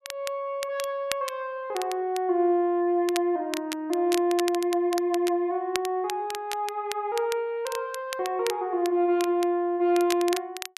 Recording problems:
crackle; vinyl, SNR 12 dB

